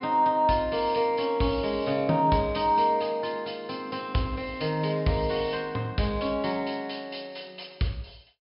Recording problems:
treble cut off; nothing above 5.5 kHz

